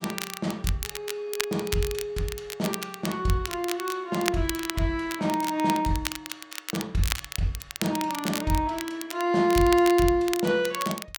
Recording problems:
crackle; vinyl, SNR 8 dB

